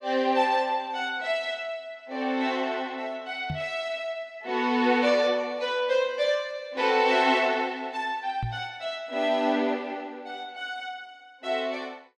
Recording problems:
microphone bump; at 3.5 s and at 8.5 s; peak -1 dB vs average level

